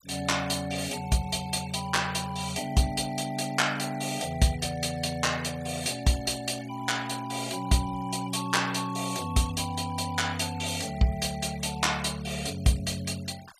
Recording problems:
noise reduction artefacts; signal-to-artefact ratio 19 dB

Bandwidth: 14.5 kHz